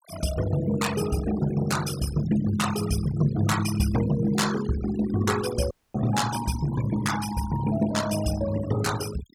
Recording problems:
noise reduction artefacts; signal-to-artefact ratio 11 dB
audio cutting out; at 5.5 s

